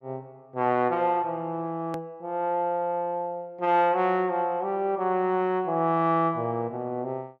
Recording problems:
edit click; at 2 s

